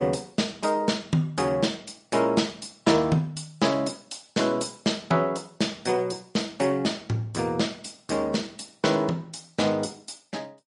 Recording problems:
lossy compression; MP3, log-spectral distance 4 dB, nothing above 10.4 kHz

